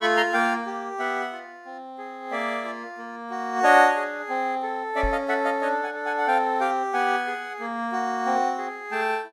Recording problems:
microphone thump; at 5 s; peak -3 dB vs average level

